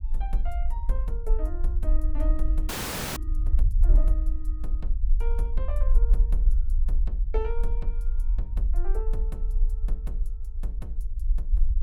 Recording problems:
rumble; below 46 Hz, SNR -12 dB
frozen audio; at 2.5 s

